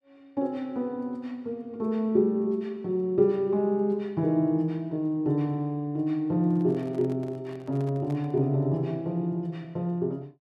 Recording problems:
microphone handling noise; from 6.5 to 8.5 s; peak -12 dB vs average level

